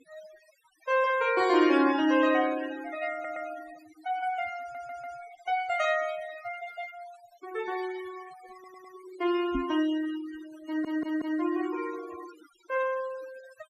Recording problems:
noise reduction artefacts; signal-to-artefact ratio 15 dB
audio stuttering; 4 times, first at 3 s
knock on the microphone; at 9.5 s; peak +1 dB vs average level

